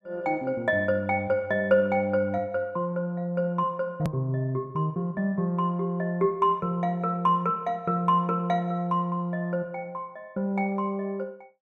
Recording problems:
hard cut with a click; at 4 s

